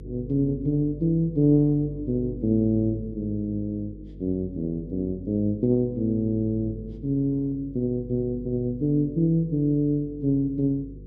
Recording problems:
hum; 50 Hz, harmonics up to 500 Hz, SNR 16 dB

